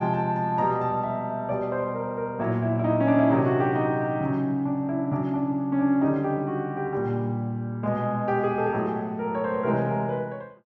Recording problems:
none

